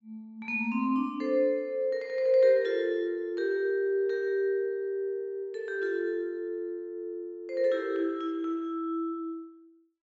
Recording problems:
low-pass filter; nothing above 7.5 kHz

